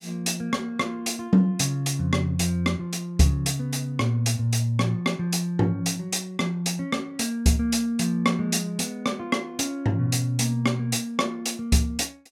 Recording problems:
none

